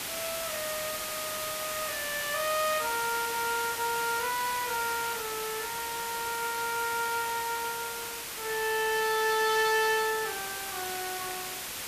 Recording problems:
background hiss; slope 0 dB per octave, SNR 4 dB

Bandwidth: 14.5 kHz